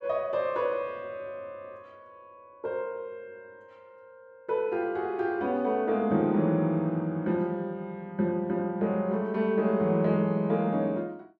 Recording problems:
none

